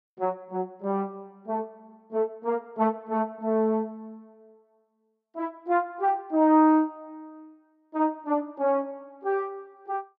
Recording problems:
none

